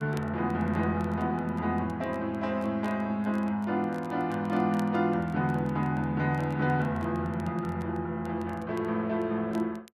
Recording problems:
crackling; vinyl, SNR 29 dB

